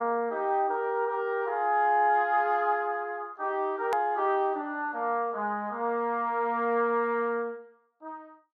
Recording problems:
edit click; at 4 s

